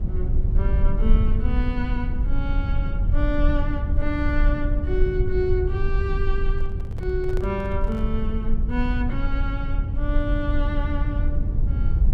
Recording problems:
rumble; below 68 Hz, SNR -4 dB
microphone handling noise; from 6.5 to 8 s; peak -3 dB vs average level

